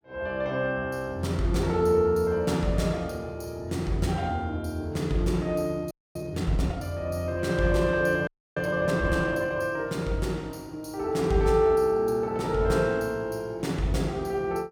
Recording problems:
audio freezing; at 6 s and at 8.5 s

